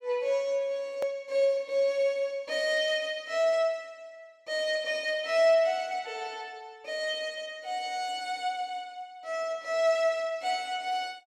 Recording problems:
click at an edit; at 1 s

